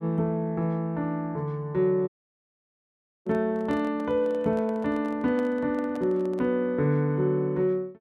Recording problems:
audio cutting out; at 2 s for 1 s
microphone handling noise; from 3.5 to 6.5 s; peak -10 dB vs average level

